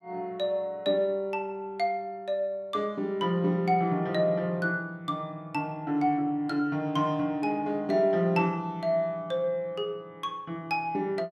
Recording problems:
none

